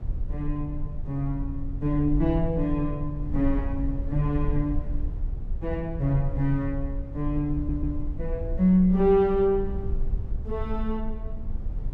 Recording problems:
rumble; below 62 Hz, strongest tone 22 Hz, SNR 7 dB
audio stuttering; at 7.5 s

